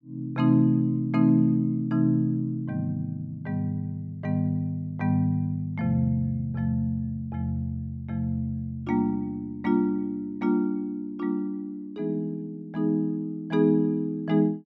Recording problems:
none

